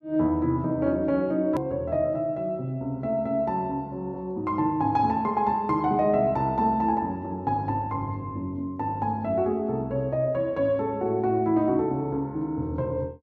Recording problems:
hard cut with a click; at 1.5 s

